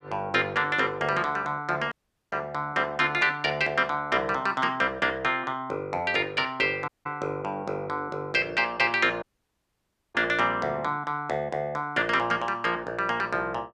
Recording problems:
dropout; at 2 s, at 7 s and at 9 s for 1 s

